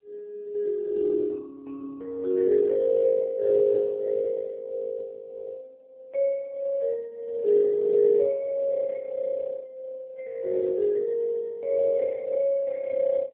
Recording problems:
telephone audio; 320 Hz to 2.1 kHz, AMR-NB

